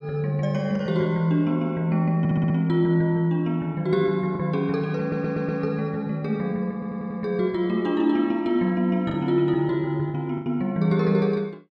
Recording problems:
lost packets; 2% of the sound replaced, filled with the last packet
stutter; at 2 s, at 5 s and at 6.5 s

